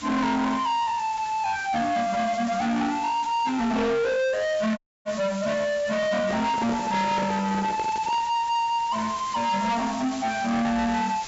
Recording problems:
low-pass filter; nothing above 8 kHz
distortion; soft clipping, signal-to-distortion ratio 7 dB
background hiss; slope 0 dB per octave, SNR 15 dB
dropout; at 5 s
microphone handling noise; from 6 to 8 s; peak -1 dB vs average level

